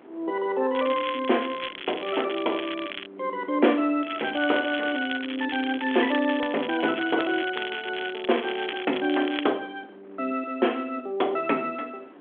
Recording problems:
phone line; 240 Hz to 3.5 kHz, G.726
wind noise; below 720 Hz, SNR 24 dB
crackle; from 0.5 to 3 s and from 4 to 9.5 s; loose cable, SNR 10 dB

